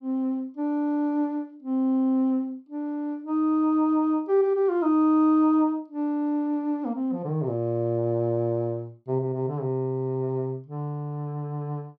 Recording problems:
none

